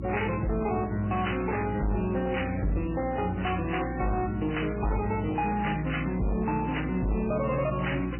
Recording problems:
codec artefacts; MP3, log-spectral distance 6 dB, nothing above 3 kHz
distorted audio; hard clipping, signal-to-distortion ratio 11 dB
hum; 60 Hz, harmonics up to 360 Hz, SNR 8 dB

